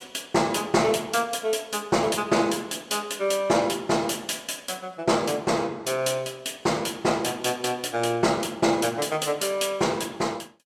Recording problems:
none

